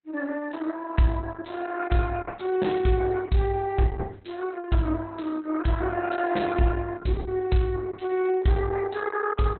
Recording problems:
codec artefacts; Opus, log-spectral distance 5 dB, nothing above 4.1 kHz

